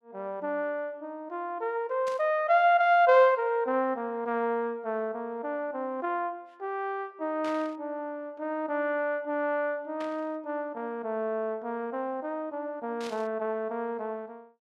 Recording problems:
static burst; 4 times, first at 2 s; peak -9 dB vs average level

